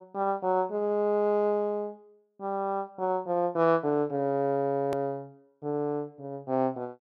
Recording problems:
hard cut with a click; at 5 s

